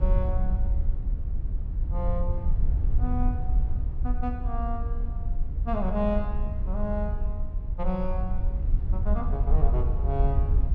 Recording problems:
wind noise; below 62 Hz, SNR -5 dB

